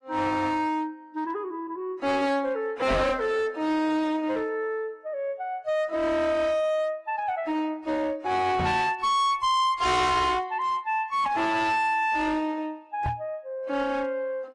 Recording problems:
lossy compression; AAC, then AAC, log-spectral distance 2 dB, nothing above 10.4 kHz
distorted audio; hard clipping, uneven, signal-to-distortion ratio 7 dB
knock on the microphone; at 3 s, at 8.5 s and at 13 s; peak -1 dB vs average level

